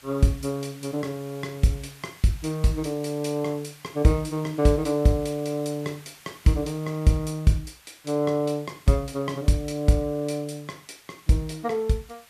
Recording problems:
hiss; SNR 23 dB

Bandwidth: 14.5 kHz